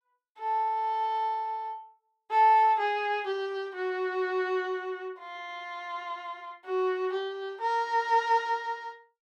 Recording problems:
none

